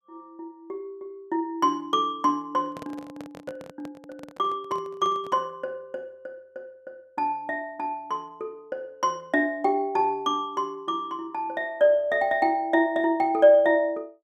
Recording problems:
handling noise; from 2.5 to 5.5 s; peak -11 dB vs average level

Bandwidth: 14.5 kHz